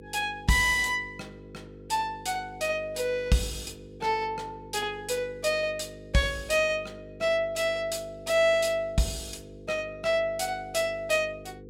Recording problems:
hum; 50 Hz, harmonics up to 500 Hz, SNR 18 dB

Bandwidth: 16 kHz